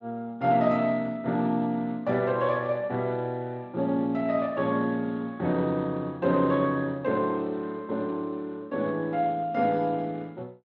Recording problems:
lossy compression; Speex, log-spectral distance 2 dB

